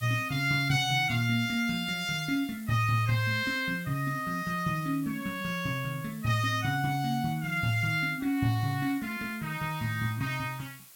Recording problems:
background hiss; slope +2 dB per octave, SNR 20 dB

